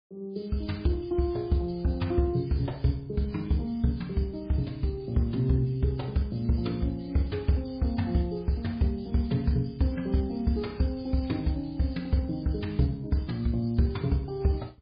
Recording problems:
lossy compression; MP3, log-spectral distance 3 dB, nothing above 4.6 kHz

